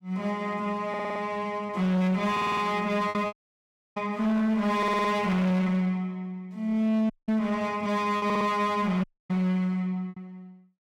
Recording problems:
distorted audio; hard clipping, uneven, signal-to-distortion ratio 10 dB
lost packets; 3% of the sound replaced, filled with repeated pitch periods
audio stuttering; 4 times, first at 1 s
dropout; at 3.5 s for 0.5 s, at 7 s and at 9 s

